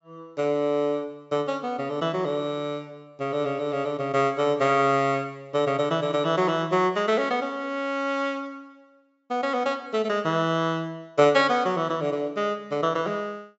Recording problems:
low-pass filter; nothing above 8 kHz

